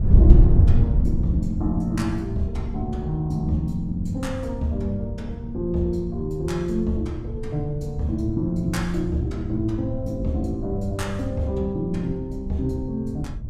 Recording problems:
wind noise; below 100 Hz, SNR 0 dB

